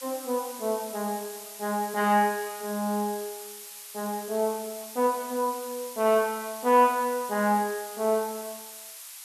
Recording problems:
background hiss; SNR 13 dB

